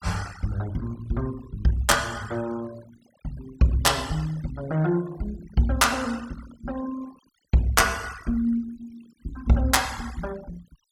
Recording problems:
denoising artefacts; signal-to-artefact ratio 20 dB

